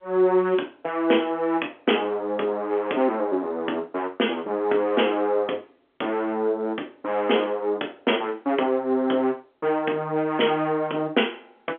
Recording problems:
telephone audio; 280 Hz to 3.6 kHz, G.711

